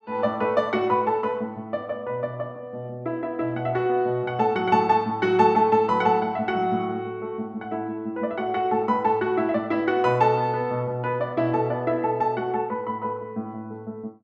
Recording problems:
none

